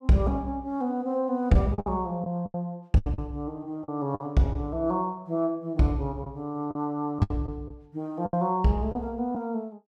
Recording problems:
lost packets; 8% of the sound replaced, filled with the last packet

